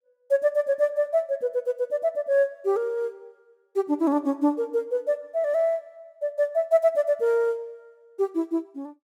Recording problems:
none

